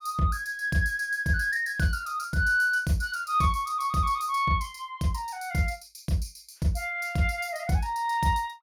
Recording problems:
none

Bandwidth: 17.5 kHz